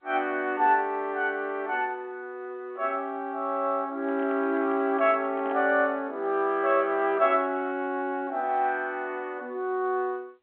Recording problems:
telephone audio; 220 Hz to 3.5 kHz, G.711
handling noise; from 4 to 6 s; peak -9 dB vs average level

